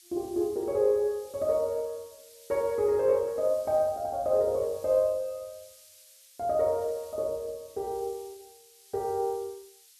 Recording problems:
hiss; slope +7 dB per octave, SNR 23 dB

